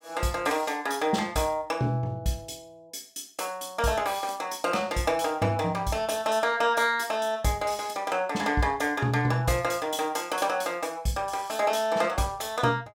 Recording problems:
none

